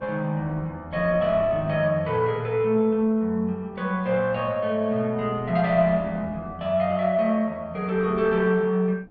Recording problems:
wind noise; below 410 Hz, SNR 21 dB

